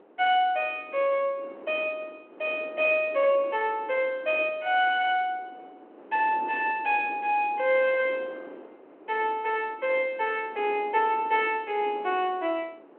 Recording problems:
phone line; 280 Hz to 3.2 kHz, G.726
wind noise; below 670 Hz, SNR 20 dB

